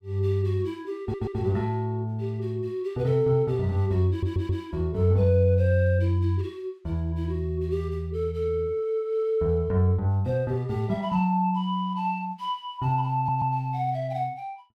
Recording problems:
stutter; at 1 s, at 4 s and at 13 s

